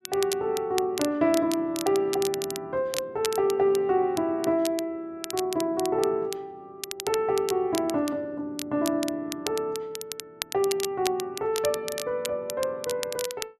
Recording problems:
crackling; vinyl, SNR 10 dB

